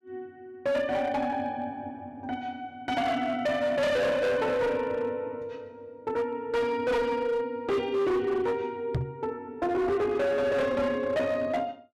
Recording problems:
distorted audio; hard clipping, signal-to-distortion ratio 8 dB
knock on the microphone; at 9 s; peak +3 dB vs average level

